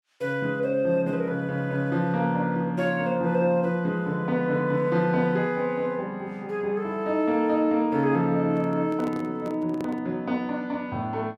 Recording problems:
microphone handling noise; from 8.5 to 10 s; peak -6 dB vs average level

